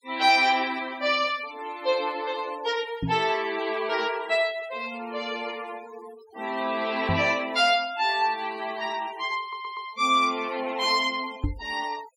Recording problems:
denoising artefacts; signal-to-artefact ratio 18 dB
knock on the microphone; at 3 s, at 7 s and at 11 s; peak +2 dB vs average level
stutter; at 9.5 s

